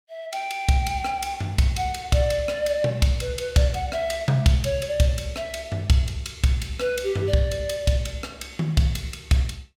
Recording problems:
none

